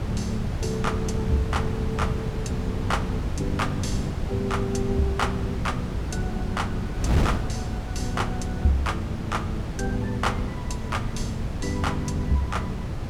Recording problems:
wind noise; below 210 Hz, SNR 1 dB

